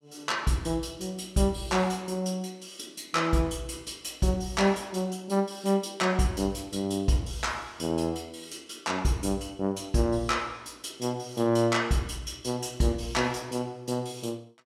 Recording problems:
none

